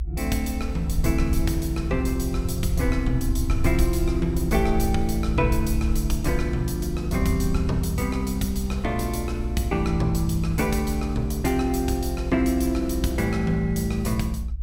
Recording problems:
low-frequency rumble; below 66 Hz, SNR 4 dB

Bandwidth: 16 kHz